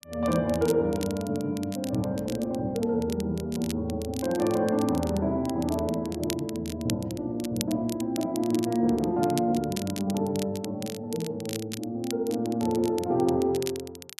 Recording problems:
crackle; vinyl, SNR 14 dB

